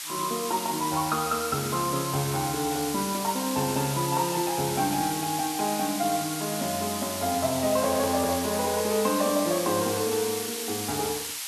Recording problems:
hiss; SNR 4 dB

